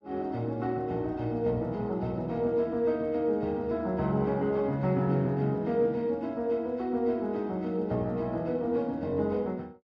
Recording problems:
none

